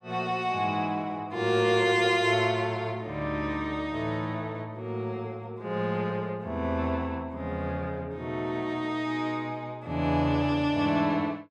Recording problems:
none

